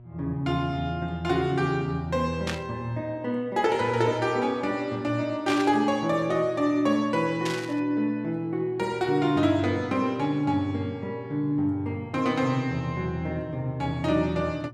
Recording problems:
mains hum; 60 Hz, harmonics up to 720 Hz, SNR 19 dB
burst of static; at 2.5 s, at 5.5 s and at 7.5 s; peak -1 dB vs average level

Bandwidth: 13.5 kHz